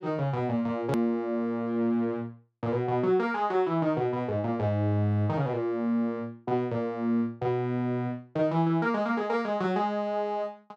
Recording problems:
click at an edit; at 1 s

